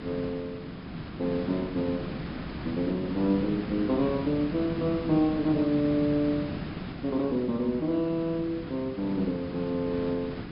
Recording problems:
treble missing; nothing above 5.5 kHz
hiss; SNR 8 dB

